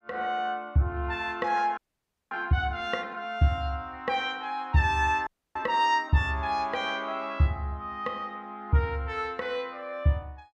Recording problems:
frozen audio; at 2 s for 0.5 s and at 5.5 s

